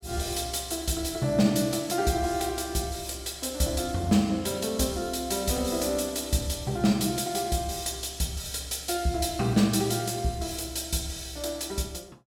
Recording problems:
none

